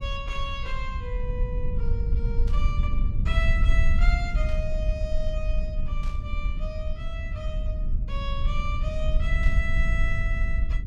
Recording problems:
low-frequency rumble; below 60 Hz, SNR -7 dB
static burst; 4 times, first at 2.5 s; peak -10 dB vs average level

